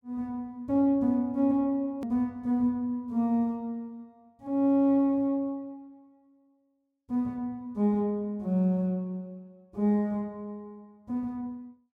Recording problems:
edit click; at 2 s

